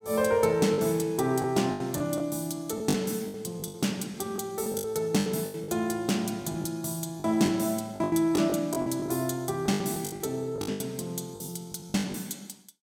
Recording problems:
lost packets; 13% of the sound replaced, filled with the last packet

